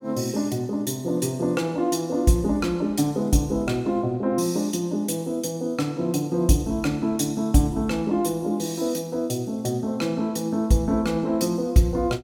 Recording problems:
none

